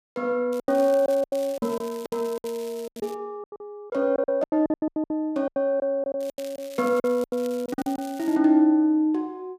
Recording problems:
packet loss; 16% of the sound replaced, filled with silence
crackle; from 0.5 to 3 s and from 6 to 8.5 s; loose cable, SNR 21 dB

